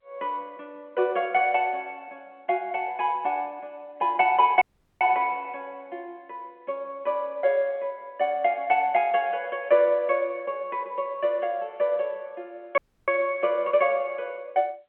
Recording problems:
telephone audio; 240 Hz to 3.7 kHz, G.711
dropout; at 4.5 s and at 13 s

